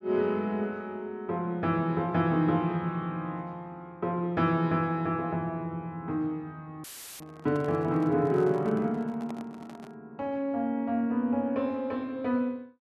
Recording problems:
dropout; at 7 s; filled with static
microphone handling noise; from 7 to 10 s; peak -10 dB vs average level

